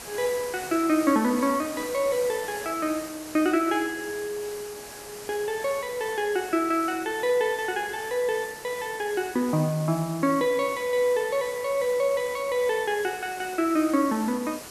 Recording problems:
hiss; slope -3 dB per octave, SNR 14 dB

